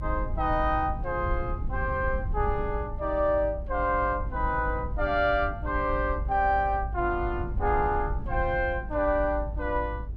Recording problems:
rumble; below 82 Hz, SNR 6 dB

